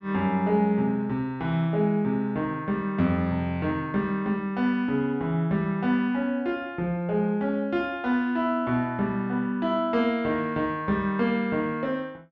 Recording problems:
none

